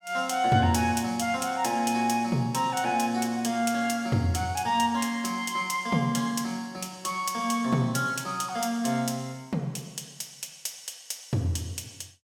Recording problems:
none

